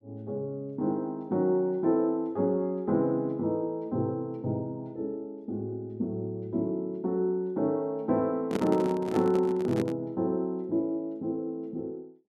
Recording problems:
handling noise; from 8.5 to 10 s; peak +3 dB vs average level

